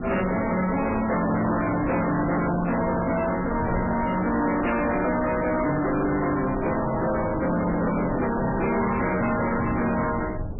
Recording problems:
lossy compression; MP3, log-spectral distance 6 dB, nothing above 2.4 kHz
distortion; soft clipping, signal-to-distortion ratio 7 dB
wind on the microphone; below 490 Hz, SNR 10 dB

